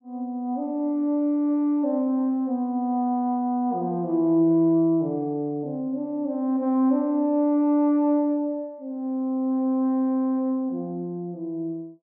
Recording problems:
none

